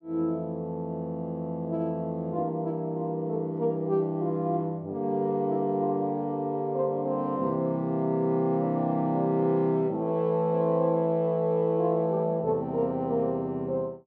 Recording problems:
none

